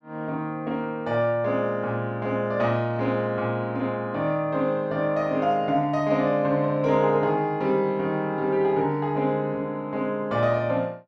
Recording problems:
none

